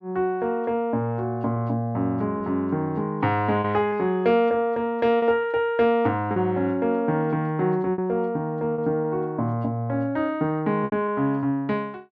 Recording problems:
lost packets; 3% of the sound replaced, filled with repeated pitch periods

